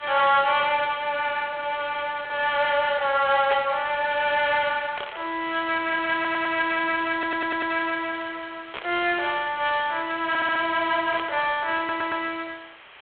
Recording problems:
telephone audio; 430 Hz to 3.5 kHz, G.726
distorted audio; soft clipping, signal-to-distortion ratio 13 dB
hiss; SNR 23 dB
static burst; 4 times, first at 3.5 s; peak -3 dB vs average level
audio stuttering; 4 times, first at 6 s

